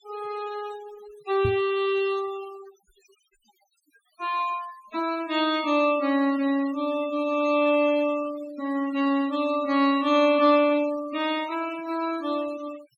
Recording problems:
denoising artefacts; signal-to-artefact ratio 19 dB
knock on the microphone; at 1.5 s; peak 0 dB vs average level

